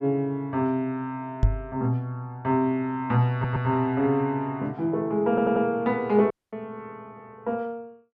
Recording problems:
knock on the microphone; at 1.5 s; peak +7 dB vs average level
audio stuttering; at 3.5 s and at 5.5 s
dropout; at 6.5 s

